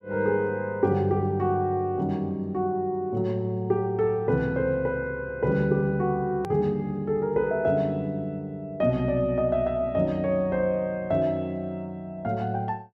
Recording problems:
edit click; at 6.5 s

